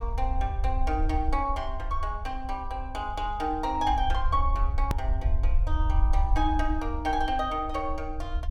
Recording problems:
low-frequency rumble; below 64 Hz, SNR 1 dB
click at an edit; at 5 s

